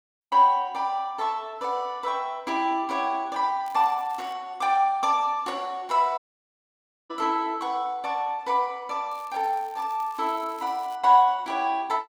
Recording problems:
crackle; at 3.5 s and from 9 to 11 s; loose cable, SNR 27 dB
dropout; at 6 s for 1 s

